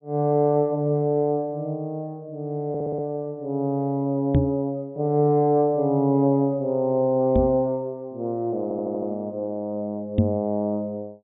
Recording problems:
low-pass filter; nothing above 4 kHz
audio stuttering; at 2.5 s and at 8.5 s
microphone bump; at 4.5 s, at 7.5 s and at 10 s; peak +8 dB vs average level

